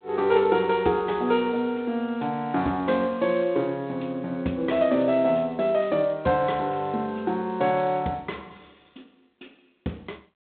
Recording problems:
phone line; 150 Hz to 3.9 kHz, G.726

